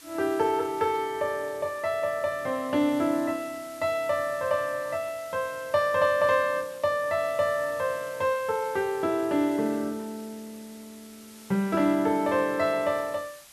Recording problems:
hiss; slope +1 dB per octave, SNR 21 dB

